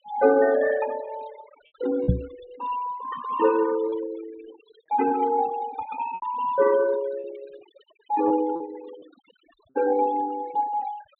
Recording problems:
low-pass filter; nothing above 4 kHz
noise reduction artefacts; signal-to-artefact ratio 19 dB
lost packets; 3% of the sound replaced, filled with repeated pitch periods
microphone thump; at 2 s; peak +7 dB vs average level

